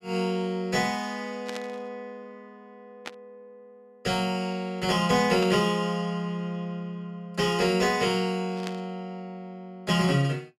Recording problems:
burst of static; 4 times, first at 1.5 s; peak -5 dB vs average level

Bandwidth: 14.5 kHz